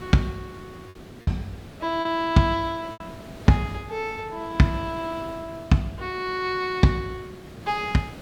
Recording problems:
background hiss; slope -6 dB per octave, SNR 17 dB
lost packets; 3% of the sound replaced, filled with repeated pitch periods

